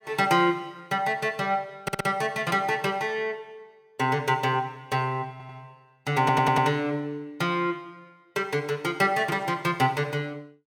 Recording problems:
audio stuttering; at 2 s, at 5.5 s and at 6 s

